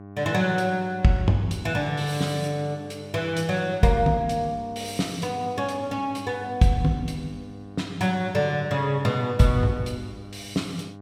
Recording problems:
electrical hum; 50 Hz, harmonics up to 1.5 kHz, SNR 17 dB

